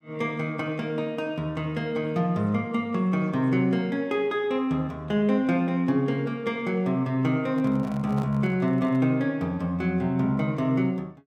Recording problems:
microphone handling noise; from 7.5 to 9 s; peak -11 dB vs average level

